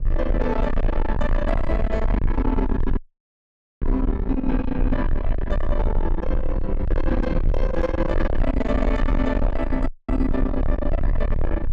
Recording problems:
distortion; soft clipping, signal-to-distortion ratio 6 dB
low-frequency rumble; below 64 Hz, strongest tone 22 Hz, SNR 1 dB
wind on the microphone; below 320 Hz, SNR 17 dB
dropout; at 3 s for 1 s and at 10 s

